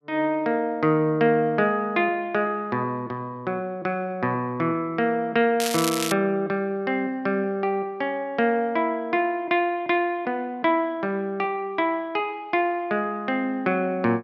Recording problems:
crackle; at 5.5 s; loose cable, SNR 5 dB

